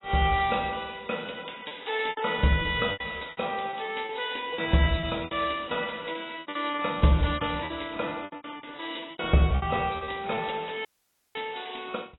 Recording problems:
lossy compression; AAC, log-spectral distance 12 dB, nothing above 3.9 kHz
packet loss; 15% of the sound replaced, filled with repeated pitch periods
audio cutting out; at 11 s for 0.5 s

